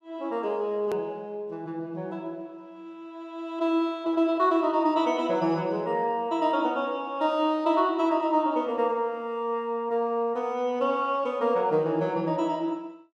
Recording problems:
click at an edit; at 1 s

